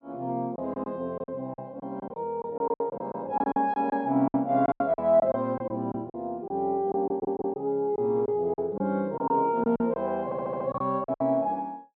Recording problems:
low-pass filter; nothing above 5.5 kHz
lost packets; 12% of the sound replaced, filled with silence
audio stuttering; at 7 s and at 10 s

